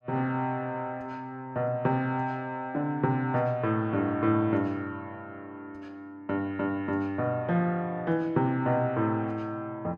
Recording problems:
none

